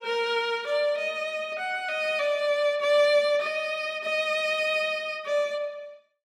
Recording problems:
none

